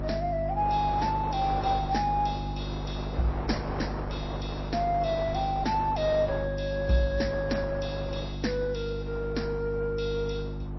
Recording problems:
lossy codec; MP3, log-spectral distance 3 dB, nothing above 5.7 kHz
hum; 50 Hz, harmonics up to 350 Hz, SNR 6 dB
wind noise; below 1 kHz, SNR 11 dB

